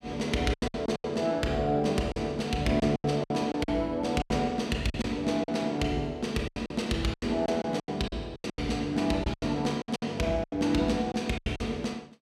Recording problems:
lost packets; 14% of the sound replaced, filled with silence

